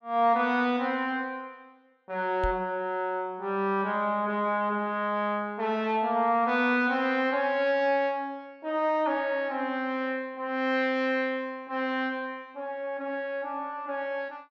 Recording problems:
microphone bump; at 2.5 s; peak -2 dB vs average level

